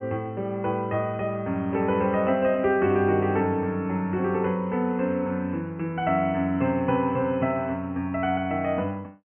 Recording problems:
treble cut off; nothing above 3 kHz

